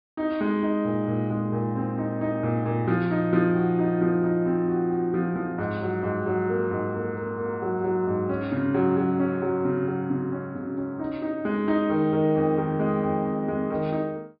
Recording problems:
low-pass filter; nothing above 5 kHz

